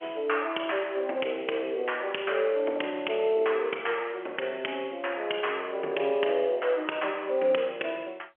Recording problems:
phone line; 280 Hz to 3.2 kHz, G.711

